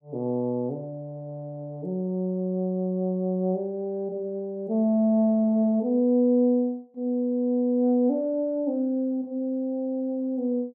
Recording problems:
none

